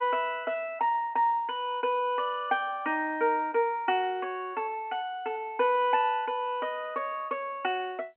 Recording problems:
phone line; 220 Hz to 3.1 kHz, G.711

